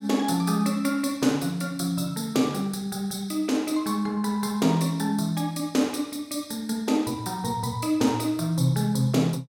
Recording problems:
none

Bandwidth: 16.5 kHz